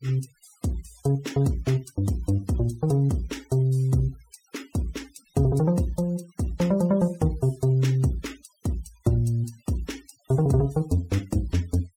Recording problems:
noise reduction artefacts; signal-to-artefact ratio 24 dB

